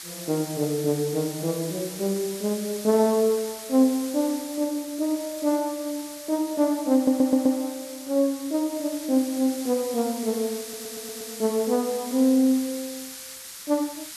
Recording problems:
hiss; slope +3 dB per octave, SNR 12 dB
stutter; at 7 s and at 11 s

